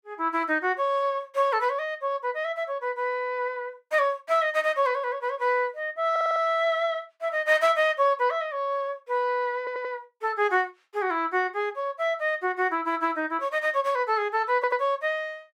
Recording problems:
stutter; at 6 s, at 9.5 s and at 15 s

